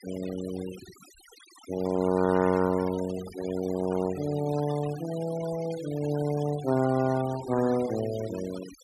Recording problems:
noise reduction artefacts; signal-to-artefact ratio 15 dB

